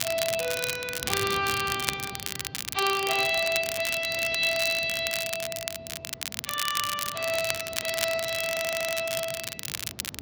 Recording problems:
lossy compression; Speex, log-spectral distance 4 dB
wind noise; below 400 Hz, SNR 17 dB
crackling; vinyl, SNR 5 dB
stutter; at 8.5 s

